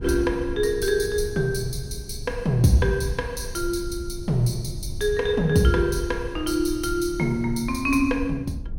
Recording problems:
rumble; below 90 Hz, SNR 12 dB

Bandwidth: 16.5 kHz